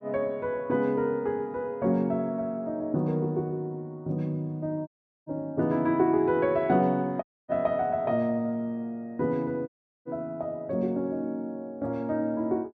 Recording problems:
audio cutting out; at 5 s, at 7 s and at 9.5 s

